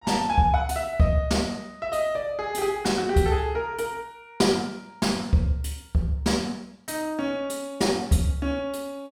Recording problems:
none

